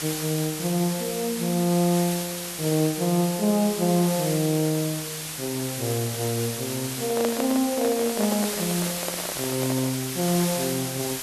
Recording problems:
hiss; slope +1 dB per octave, SNR 5 dB
handling noise; from 7 to 10 s; peak +1 dB vs average level

